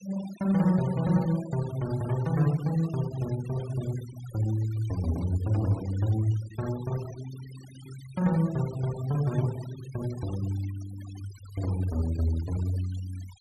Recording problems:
denoising artefacts; signal-to-artefact ratio 19 dB

